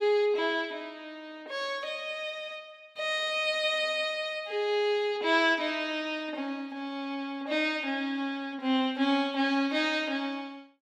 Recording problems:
none

